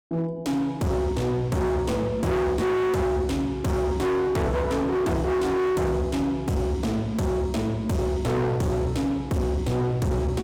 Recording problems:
distortion; hard clipping, signal-to-distortion ratio 6 dB

